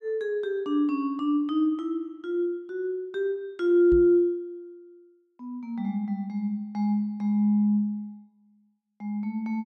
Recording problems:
knock on the microphone; at 4 s; peak -4 dB vs average level

